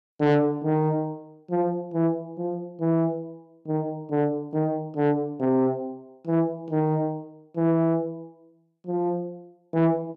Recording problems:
distortion; soft clipping, signal-to-distortion ratio 11 dB

